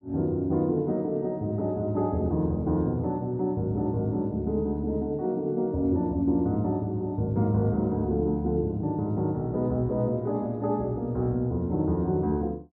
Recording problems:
none

